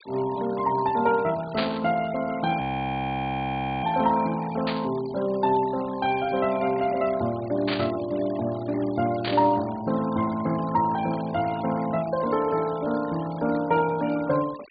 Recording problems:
treble cut off; nothing above 4.7 kHz
noise reduction artefacts; signal-to-artefact ratio 19 dB
static burst; 4 times, first at 1.5 s; peak 0 dB vs average level
audio freezing; at 2.5 s for 1 s

